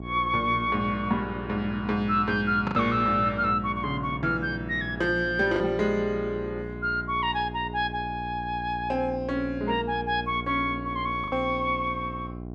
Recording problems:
hum; 60 Hz, harmonics up to 780 Hz, SNR 11 dB
packet loss; 1.6% of the sound replaced, filled with the last packet

